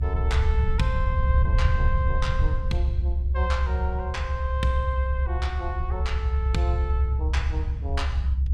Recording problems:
rumble; below 74 Hz, strongest tone 66 Hz, SNR -6 dB

